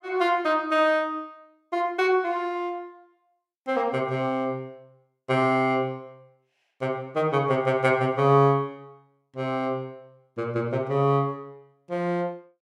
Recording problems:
none

